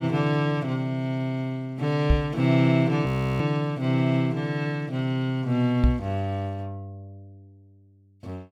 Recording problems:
microphone thump; at 2 s and at 6 s; peak +8 dB vs average level
frozen audio; at 3 s

